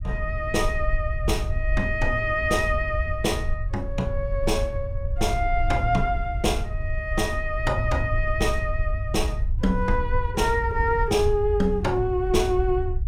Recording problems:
low-frequency rumble; below 76 Hz, SNR 4 dB

